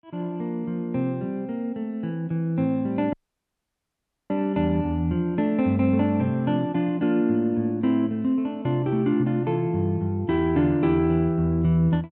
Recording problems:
audio cutting out; at 3 s for 1 s

